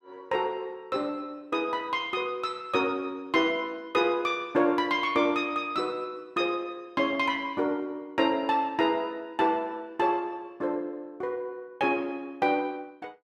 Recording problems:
none

